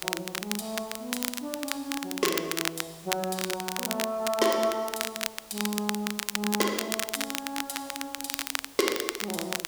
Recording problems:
hiss; slope -2 dB per octave, SNR 17 dB
crackling; vinyl, SNR 1 dB

